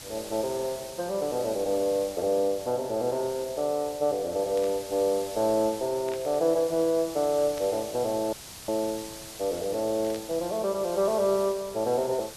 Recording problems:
background hiss; slope 0 dB per octave, SNR 14 dB
static burst; 4 times, first at 4.5 s; peak -12 dB vs average level
dropout; at 8.5 s

